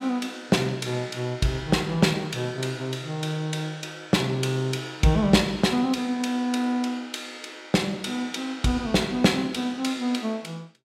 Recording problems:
none

